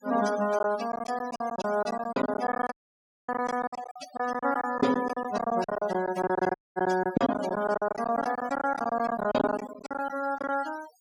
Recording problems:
denoising artefacts; signal-to-artefact ratio 14 dB
packet loss; 17% of the sound replaced, filled with silence
audio cutting out; at 2.5 s for 0.5 s and at 6.5 s

